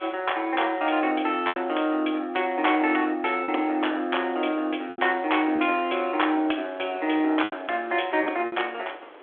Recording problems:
telephone audio; 280 Hz to 3.5 kHz, G.726
wind on the microphone; below 1.6 kHz, SNR 22 dB
lost packets; 4% of the sound replaced, filled with repeated pitch periods

